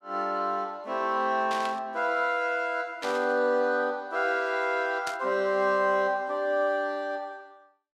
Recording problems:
static burst; at 1.5 s, at 3 s and at 5 s; peak -5 dB vs average level

